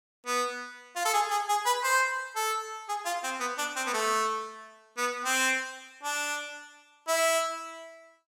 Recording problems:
none

